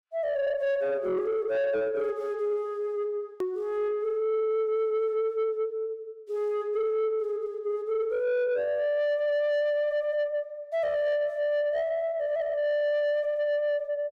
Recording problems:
distortion; soft clipping, signal-to-distortion ratio 10 dB
click at an edit; at 3.5 s

